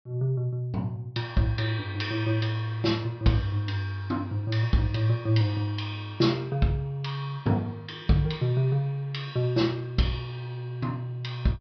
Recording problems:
treble missing; nothing above 5.5 kHz

